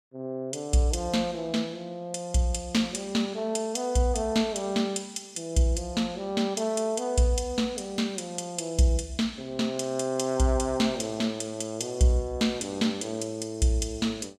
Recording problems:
none

